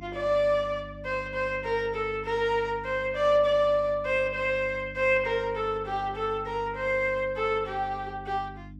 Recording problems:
hum; 50 Hz, harmonics up to 300 Hz, SNR 17 dB

